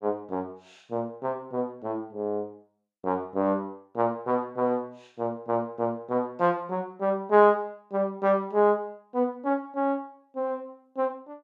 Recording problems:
none

